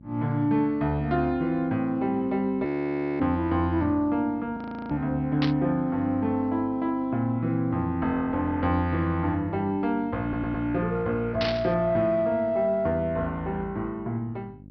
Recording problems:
treble missing; nothing above 5.5 kHz
mains hum; 50 Hz, harmonics up to 600 Hz, SNR 22 dB
audio freezing; at 2.5 s for 0.5 s and at 4.5 s
burst of static; at 5.5 s and at 11 s; peak 0 dB vs average level
audio stuttering; at 10 s

